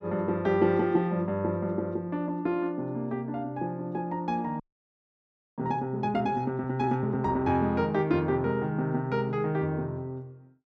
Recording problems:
audio freezing; at 4.5 s for 1 s

